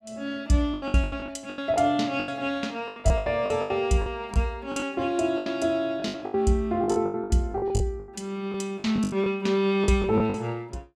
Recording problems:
lost packets; 17% of the sound replaced, filled with the last packet

